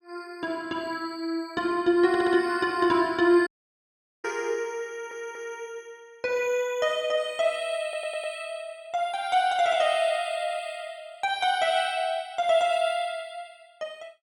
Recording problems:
stutter; at 2 s, at 5 s and at 8 s
audio cutting out; at 3.5 s for 1 s

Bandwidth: 17 kHz